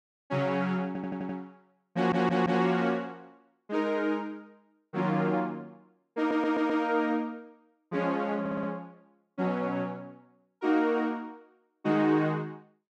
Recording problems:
stutter; 4 times, first at 1 s

